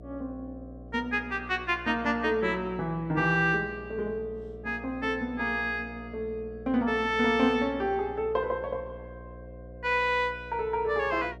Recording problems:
hum; 60 Hz, harmonics up to 720 Hz, SNR 17 dB

